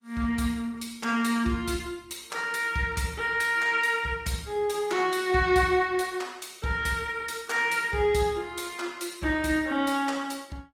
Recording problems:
lossy codec; Opus, log-spectral distance 4 dB, nothing above 17.4 kHz

